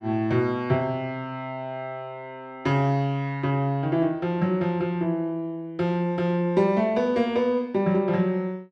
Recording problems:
none

